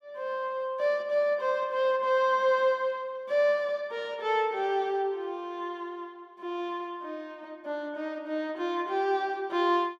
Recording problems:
none

